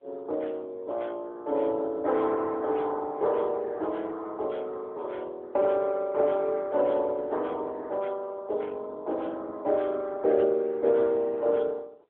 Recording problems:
phone line; 300 Hz to 3.5 kHz, AMR-NB

